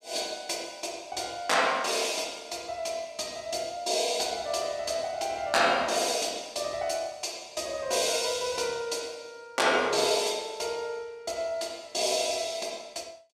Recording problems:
none

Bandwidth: 14.5 kHz